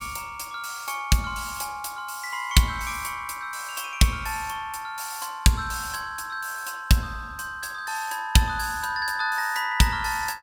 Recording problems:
none

